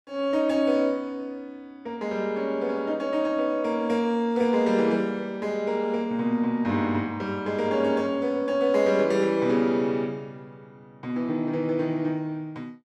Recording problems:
none

